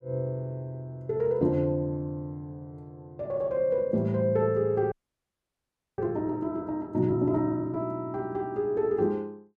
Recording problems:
audio freezing; at 5 s for 1 s

